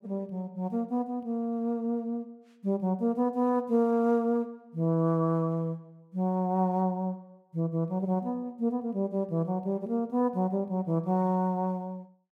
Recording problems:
none

